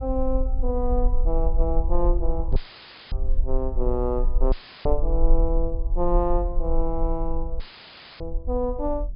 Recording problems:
treble missing; nothing above 5.1 kHz
low-frequency rumble; below 40 Hz, strongest tone 20 Hz, SNR 0 dB
knock on the microphone; at 2.5 s and at 7.5 s; peak 0 dB vs average level
audio cutting out; at 2.5 s for 0.5 s, at 4.5 s and at 7.5 s for 0.5 s; filled with static

